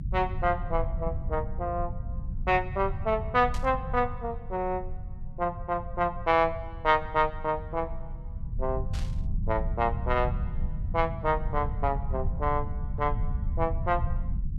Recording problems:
rumble; below 96 Hz, SNR 6 dB
static burst; at 3.5 s and at 9 s; peak -9 dB vs average level

